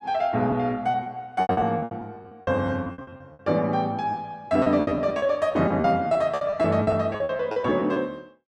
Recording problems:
lost packets; 17% of the sound replaced, filled with repeated pitch periods

